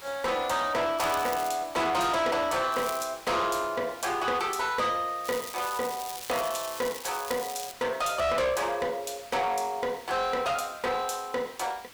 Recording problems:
distorted audio; soft clipping, signal-to-distortion ratio 8 dB
hiss; SNR 19 dB
crackle; at 1 s, at 2.5 s and from 5.5 to 7.5 s; loose cable, SNR 11 dB

